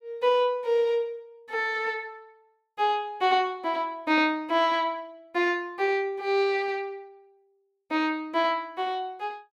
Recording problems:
none

